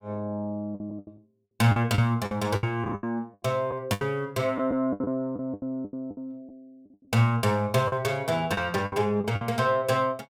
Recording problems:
packet loss; 12% of the sound replaced, filled with the last packet

